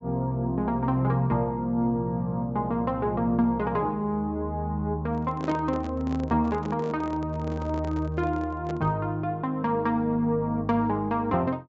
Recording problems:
treble cut off; nothing above 7.7 kHz
microphone handling noise; from 5 to 9 s; peak -5 dB vs average level

